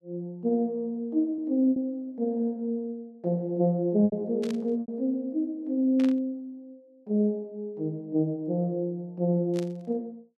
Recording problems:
packet loss; 3% of the sound replaced, filled with repeated pitch periods
static burst; at 4.5 s, at 6 s and at 9.5 s; peak -9 dB vs average level

